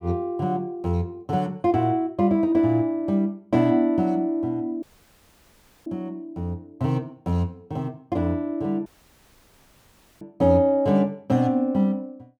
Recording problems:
audio cutting out; at 5 s for 1 s and at 9 s for 1.5 s

